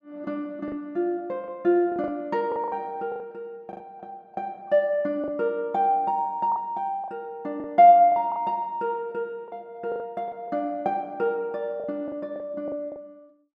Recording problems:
packet loss; 8% of the sound replaced, filled with the last packet

